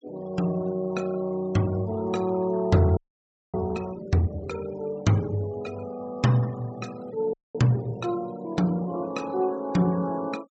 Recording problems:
treble cut off; nothing above 8 kHz
denoising artefacts; signal-to-artefact ratio 22 dB
audio freezing; at 3 s for 0.5 s and at 7.5 s

